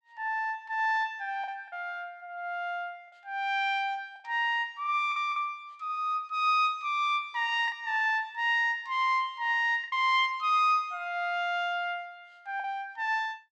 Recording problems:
lost packets; 3% of the sound replaced, filled with the last packet

